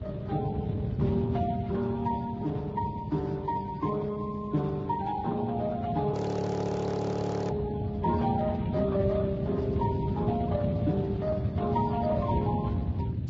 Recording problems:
codec artefacts; Speex, then Vorbis, log-spectral distance 3 dB, nothing above 7.3 kHz
low-frequency rumble; below 140 Hz, SNR 12 dB
wind on the microphone; below 210 Hz, SNR 4 dB
audio freezing; at 6 s for 1.5 s

